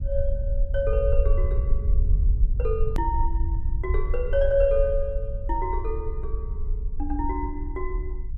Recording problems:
rumble; below 60 Hz, SNR -1 dB
click at an edit; at 3 s

